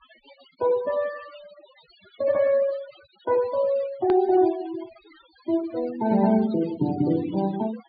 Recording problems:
treble cut off; nothing above 4.7 kHz
noise reduction artefacts; signal-to-artefact ratio 19 dB
hard cut with a click; at 4 s

